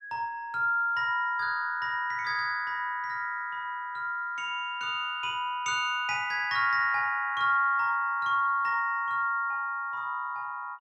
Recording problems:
none

